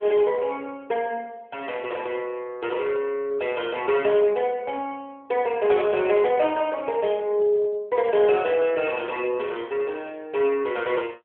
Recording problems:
telephone audio; 300 Hz to 3.3 kHz, AMR-NB

